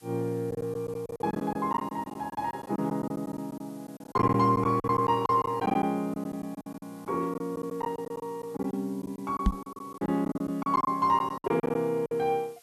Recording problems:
hiss; slope +2 dB per octave, SNR 27 dB
lost packets; 14% of the sound replaced, filled with silence
microphone bump; at 9.5 s; peak +8 dB vs average level

